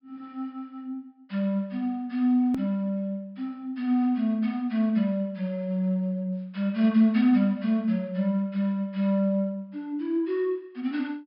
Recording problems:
low-pass filter; nothing above 5.5 kHz
hard cut with a click; at 2.5 s

